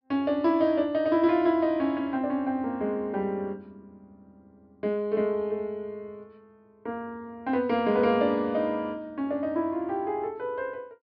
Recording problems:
low-pass filter; nothing above 5.5 kHz

